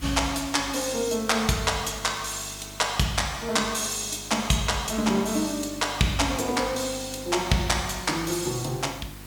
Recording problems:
electrical hum; 50 Hz, harmonics up to 350 Hz, SNR 19 dB
background hiss; slope -2 dB per octave, SNR 19 dB

